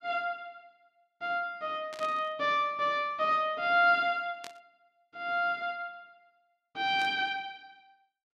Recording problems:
burst of static; at 2 s, at 4.5 s and at 7 s; peak -10 dB vs average level

